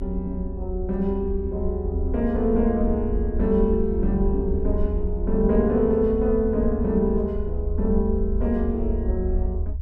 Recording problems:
low-frequency rumble; below 76 Hz, SNR 5 dB

